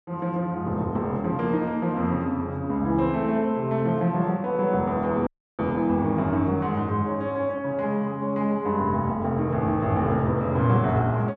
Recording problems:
audio cutting out; at 5.5 s

